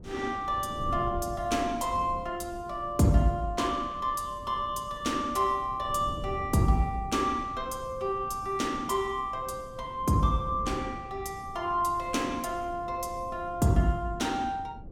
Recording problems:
wind noise; below 220 Hz, SNR 14 dB

